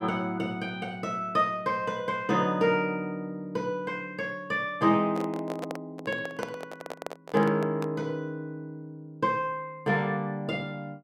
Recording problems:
microphone handling noise; from 5 to 8 s; peak -1 dB vs average level

